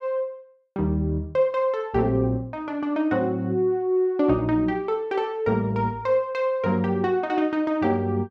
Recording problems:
none

